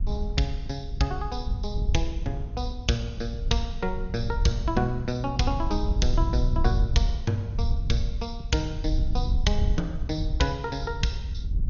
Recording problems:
lossy codec; MP2, log-spectral distance 2 dB, nothing above 6.5 kHz
wind on the microphone; below 72 Hz, SNR 1 dB

